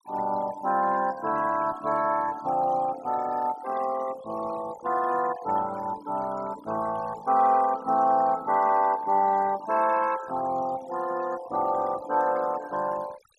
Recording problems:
noise reduction artefacts; signal-to-artefact ratio 18 dB

